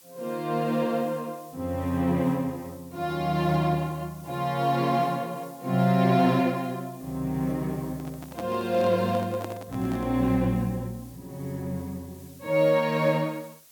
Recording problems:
background hiss; slope +1 dB per octave, SNR 24 dB
handling noise; from 8 to 10 s; peak -6 dB vs average level

